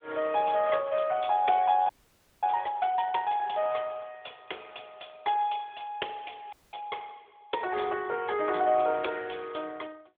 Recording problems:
phone line; 340 Hz to 3.5 kHz, AMR-NB
frozen audio; at 2 s for 0.5 s and at 6.5 s

